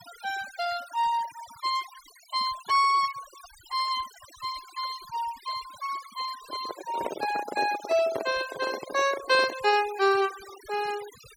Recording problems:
noise reduction artefacts; signal-to-artefact ratio 16 dB
microphone handling noise; from 6.5 to 9.5 s; peak 0 dB vs average level

